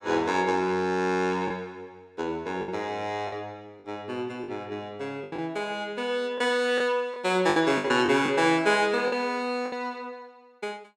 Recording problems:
lost packets; 6% of the sound replaced, filled with the last packet

